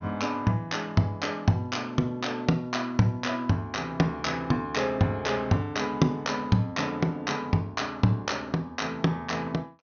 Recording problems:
low-pass filter; nothing above 6.4 kHz

